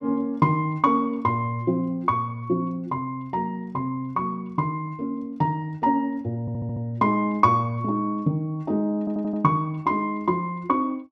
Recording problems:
stutter; at 6.5 s and at 9 s

